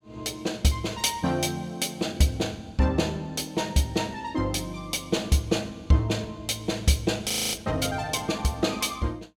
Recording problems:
audio freezing; at 7.5 s

